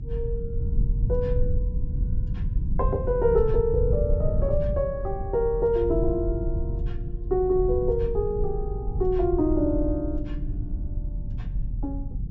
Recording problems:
treble missing; nothing above 8 kHz
rumble; below 92 Hz, SNR 3 dB

